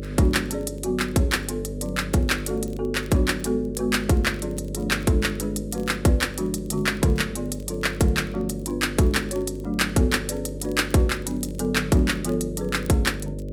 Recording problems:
electrical hum; 50 Hz, harmonics up to 600 Hz, SNR 10 dB
crackle; vinyl, SNR 30 dB

